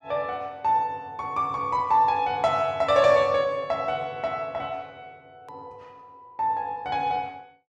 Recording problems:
edit click; at 5.5 s

